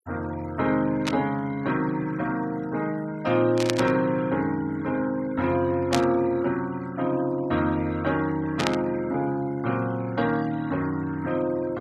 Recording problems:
noise reduction artefacts; signal-to-artefact ratio 22 dB
static burst; 4 times, first at 1 s; peak +4 dB vs average level

